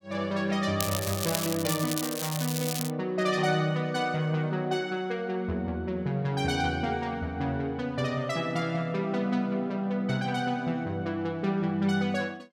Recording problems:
crackle; from 1 to 3 s; loose cable, SNR 4 dB

